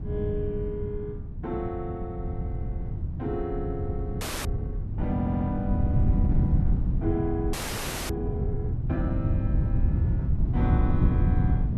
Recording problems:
wind on the microphone; below 130 Hz, SNR -5 dB
frozen audio; at 4 s and at 7.5 s for 0.5 s
audio stuttering; at 5 s

